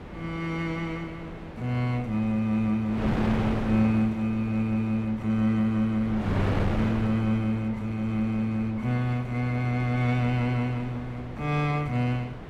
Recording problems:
wind noise; below 640 Hz, SNR 9 dB

